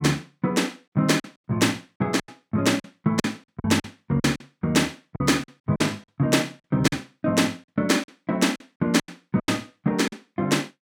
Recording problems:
lost packets; 12% of the sound replaced, filled with silence

